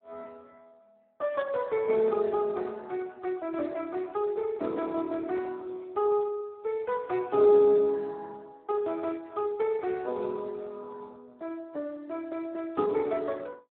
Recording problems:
telephone audio; 220 Hz to 2.6 kHz, Speex

